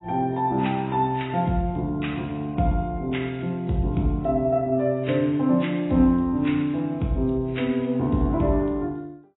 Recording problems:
lossy codec; AAC, log-spectral distance 3 dB, nothing above 3.8 kHz

